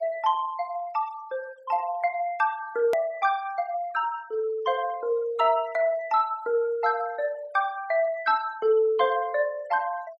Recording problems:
noise reduction artefacts; signal-to-artefact ratio 23 dB
hard cut with a click; at 3 s

